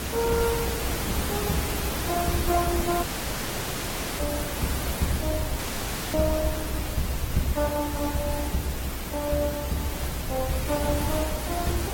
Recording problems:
lossy compression; Opus, log-spectral distance 8 dB
background hiss; slope -4 dB per octave, SNR 2 dB
low-frequency rumble; below 78 Hz, strongest tone 62 Hz, SNR 6 dB
audio cutting out; at 3 s for 1 s and at 5.5 s for 0.5 s

